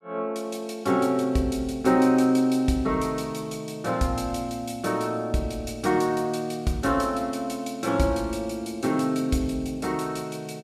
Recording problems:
none

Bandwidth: 14 kHz